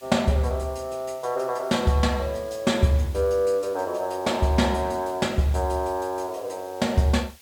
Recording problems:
background hiss; slope +2 dB per octave, SNR 24 dB

